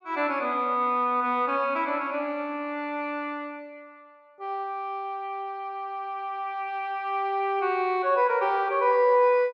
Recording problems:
none

